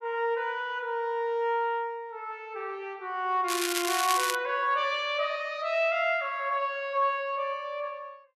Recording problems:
crackling; at 3.5 s; loose cable, SNR 2 dB

